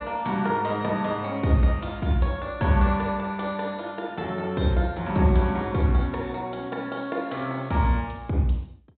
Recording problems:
treble cut off; nothing above 4 kHz

